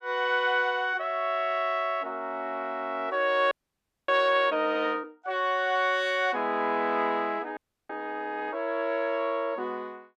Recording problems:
frozen audio; at 3.5 s for 0.5 s and at 7.5 s

